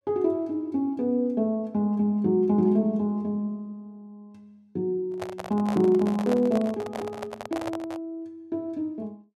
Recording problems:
handling noise; from 5 to 8 s; peak -2 dB vs average level

